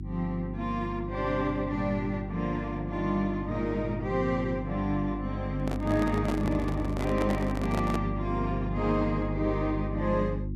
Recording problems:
electrical hum; 50 Hz, harmonics up to 350 Hz, SNR 5 dB
handling noise; from 5.5 to 8 s; peak 0 dB vs average level

